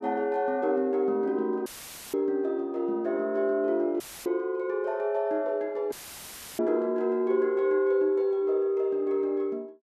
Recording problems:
dropout; at 1.5 s, at 4 s and at 6 s for 0.5 s; filled with static

